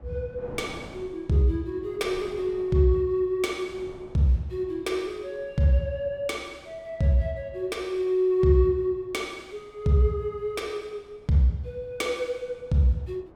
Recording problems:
wind noise; below 580 Hz, SNR 23 dB

